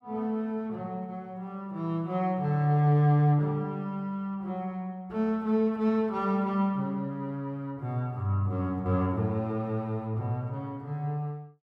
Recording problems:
none

